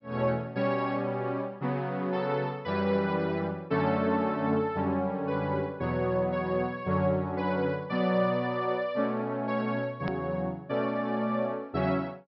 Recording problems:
low-pass filter; nothing above 5.5 kHz
edit click; at 10 s

